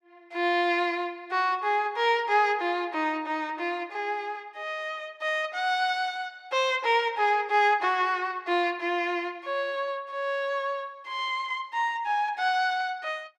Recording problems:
none

